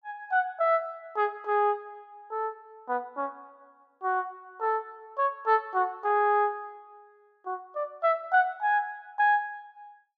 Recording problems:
none

